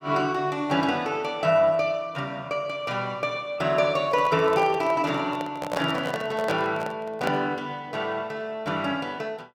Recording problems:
handling noise; from 4 to 7.5 s; peak 0 dB vs average level

